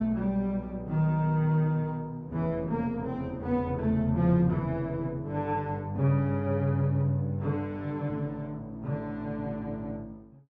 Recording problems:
none

